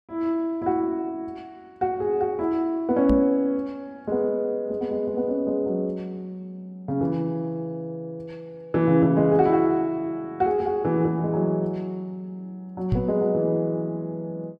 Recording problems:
microphone thump; at 3 s and at 13 s; peak +4 dB vs average level

